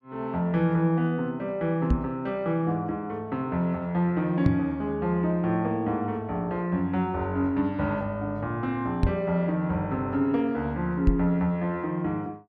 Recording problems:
knock on the microphone; 4 times, first at 2 s; peak +7 dB vs average level

